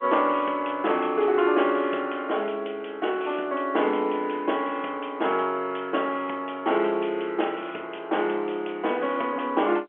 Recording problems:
telephone audio; 260 Hz to 3.3 kHz, G.711

